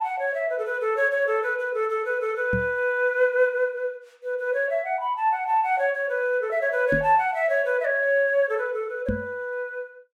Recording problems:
microphone bump; at 2.5 s, at 7 s and at 9 s; peak 0 dB vs average level

